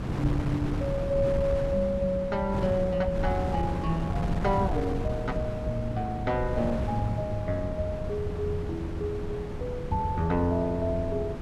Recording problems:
hum; 60 Hz, harmonics up to 360 Hz, SNR 19 dB
wind noise; below 250 Hz, SNR 4 dB

